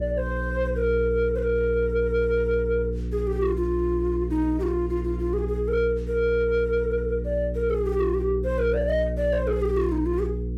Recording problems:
distortion; soft clipping, signal-to-distortion ratio 11 dB
electrical hum; 60 Hz, harmonics up to 480 Hz, SNR 5 dB

